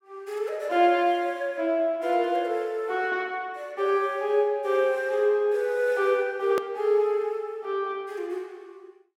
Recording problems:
hard cut with a click; at 6.5 s

